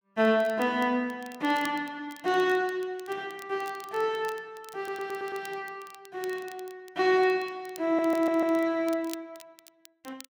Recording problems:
crackling; vinyl, SNR 22 dB
audio stuttering; at 5 s and at 8 s

